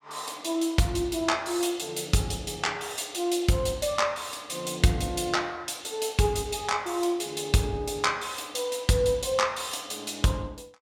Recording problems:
none

